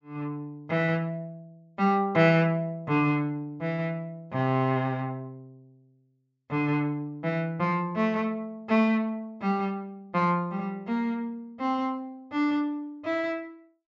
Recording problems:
low-pass filter; nothing above 7.4 kHz

